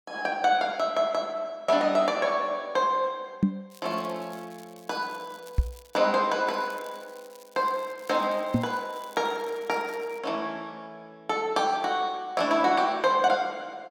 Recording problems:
microphone thump; at 3.5 s, at 5.5 s and at 8.5 s; peak +8 dB vs average level
crackle; from 3.5 to 6 s and from 6.5 to 10 s; loose cable, SNR 26 dB

